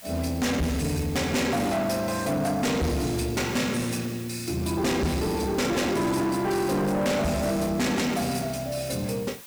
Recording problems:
distortion; soft clipping, signal-to-distortion ratio 7 dB
background hiss; slope 0 dB per octave, SNR 18 dB

